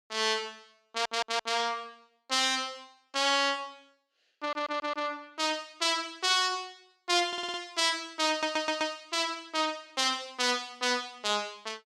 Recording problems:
stutter; 4 times, first at 1 s

